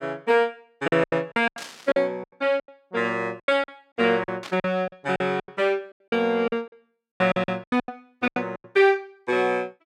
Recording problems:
packet loss; 17% of the sound replaced, filled with silence
static burst; at 1.5 s and at 4.5 s; peak -8 dB vs average level

